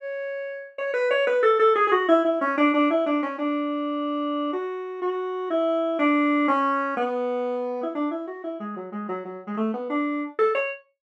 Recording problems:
none

